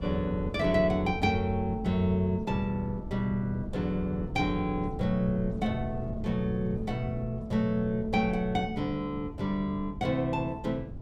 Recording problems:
wind on the microphone; below 190 Hz, SNR 10 dB

